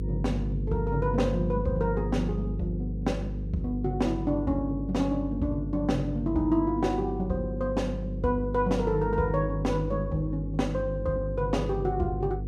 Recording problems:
hum; 50 Hz, harmonics up to 500 Hz, SNR 5 dB

